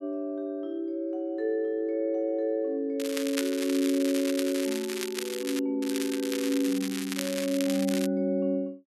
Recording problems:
crackle; from 3 to 5.5 s and from 6 to 8 s; loose cable, SNR 8 dB

